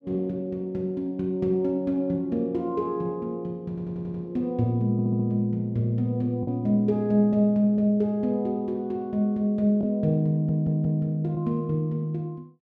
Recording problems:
lost packets; 0.7% of the sound replaced, filled with the last packet
audio stuttering; at 3.5 s, at 5 s and at 10 s

